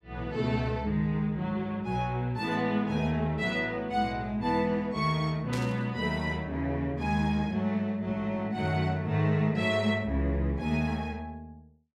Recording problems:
static burst; at 5.5 s; peak -6 dB vs average level

